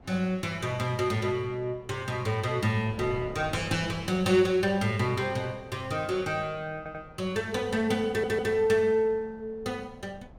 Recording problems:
wind on the microphone; below 500 Hz, SNR 20 dB
audio stuttering; at 7 s and at 8 s

